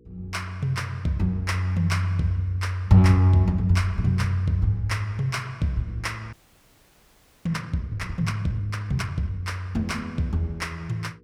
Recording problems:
electrical hum; 60 Hz, harmonics up to 480 Hz, SNR 32 dB
frozen audio; at 6.5 s for 1 s

